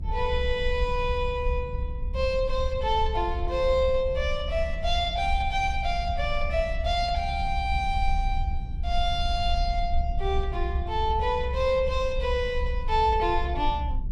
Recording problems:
low-frequency rumble; below 66 Hz, SNR 5 dB

